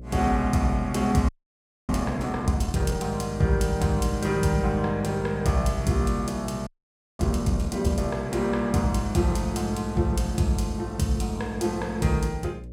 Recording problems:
hum; 60 Hz, harmonics up to 600 Hz, SNR 14 dB
audio freezing; at 1.5 s for 0.5 s and at 6.5 s for 0.5 s

